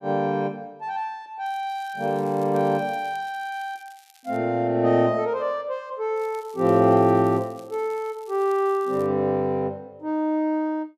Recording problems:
crackle; from 1.5 to 4.5 s and from 6 to 9 s; loose cable, SNR 29 dB

